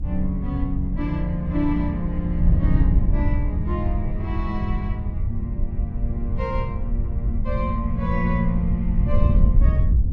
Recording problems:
hum; 60 Hz, harmonics up to 720 Hz, SNR 24 dB
wind noise; below 88 Hz, SNR -3 dB

